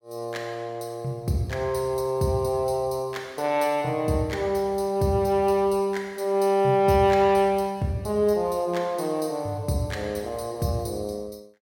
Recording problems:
none

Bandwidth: 17 kHz